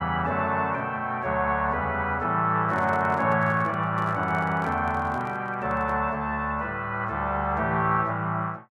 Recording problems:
microphone handling noise; from 2.5 to 6 s; peak -11 dB vs average level

